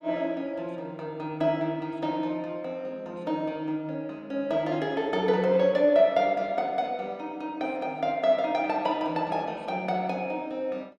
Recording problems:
none

